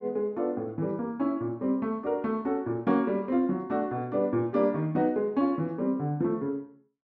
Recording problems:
none

